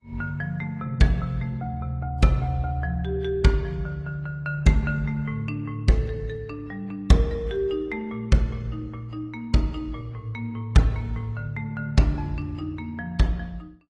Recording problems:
codec artefacts; Opus, then AAC, log-spectral distance 2 dB

